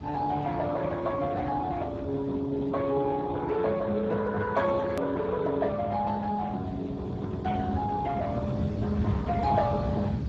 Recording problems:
lossy codec; Speex, log-spectral distance 3 dB, nothing above 13.1 kHz
hum; 60 Hz, harmonics up to 360 Hz, SNR 21 dB
low-frequency rumble; below 230 Hz, SNR 7 dB
edit click; at 5 s

